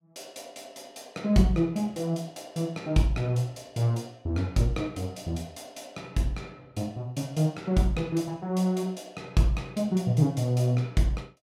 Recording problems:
none

